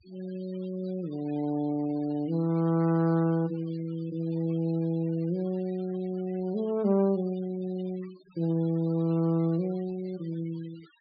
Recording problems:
treble missing; nothing above 4.8 kHz
denoising artefacts; signal-to-artefact ratio 24 dB

